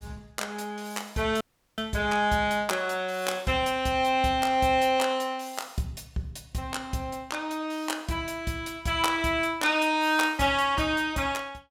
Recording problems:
dropout; at 1.5 s

